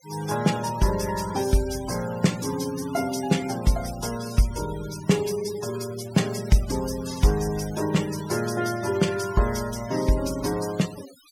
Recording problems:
denoising artefacts; signal-to-artefact ratio 14 dB

